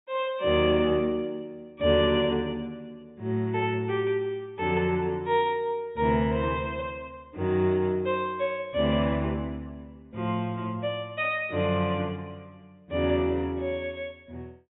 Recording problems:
treble cut off; nothing above 4 kHz

